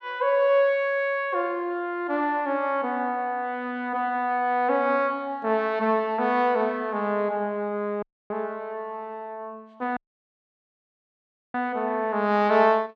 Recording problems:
dropout; at 8 s and at 10 s for 1.5 s

